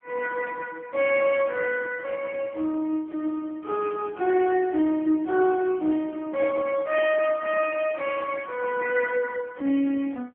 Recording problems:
phone line; 190 Hz to 3.3 kHz, AMR-NB

